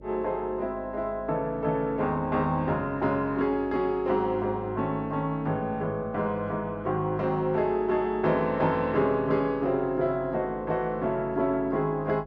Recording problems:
hum; 50 Hz, harmonics up to 600 Hz, SNR 21 dB

